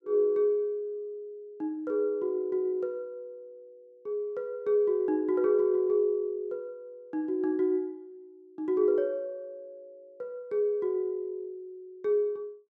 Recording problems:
none

